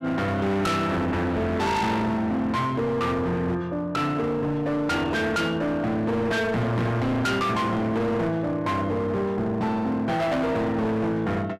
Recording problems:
distortion; hard clipping, signal-to-distortion ratio 7 dB

